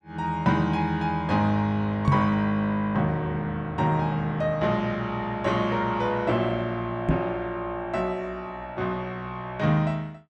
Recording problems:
microphone thump; at 2 s and at 7 s; peak +7 dB vs average level

